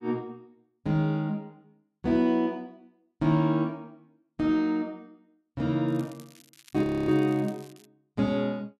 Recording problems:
crackle; from 6 to 8 s; loose cable, SNR 27 dB
audio freezing; at 7 s

